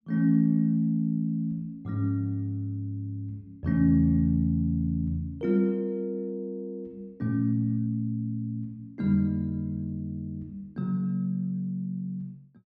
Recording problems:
none

